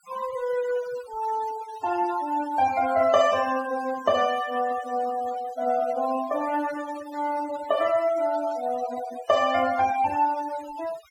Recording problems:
denoising artefacts; signal-to-artefact ratio 16 dB

